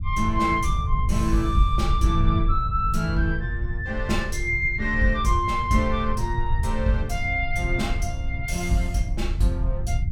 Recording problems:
low-frequency rumble; below 82 Hz, SNR 4 dB

